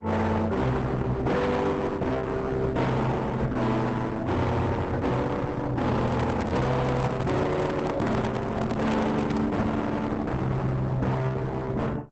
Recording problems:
lossy codec; Opus, log-spectral distance 3 dB, nothing above 8 kHz
distortion; hard clipping, signal-to-distortion ratio 6 dB
microphone handling noise; from 6 to 9.5 s; peak +2 dB vs average level

